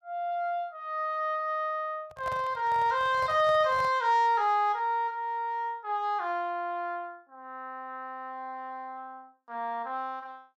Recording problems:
microphone handling noise; from 2 to 4 s; peak -8 dB vs average level

